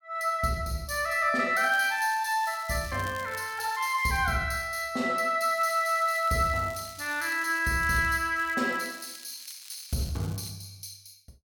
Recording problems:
crackle; from 1.5 to 4 s, from 5.5 to 8 s and from 8.5 to 11 s; loose cable, SNR 20 dB

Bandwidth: 18 kHz